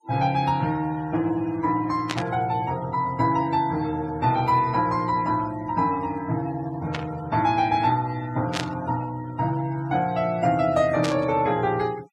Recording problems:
denoising artefacts; signal-to-artefact ratio 22 dB
burst of static; 4 times, first at 2 s; peak 0 dB vs average level

